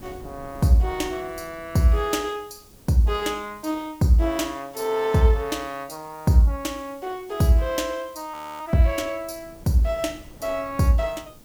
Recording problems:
background hiss; slope +3 dB per octave, SNR 27 dB
wind noise; below 320 Hz, SNR 24 dB
frozen audio; at 8.5 s

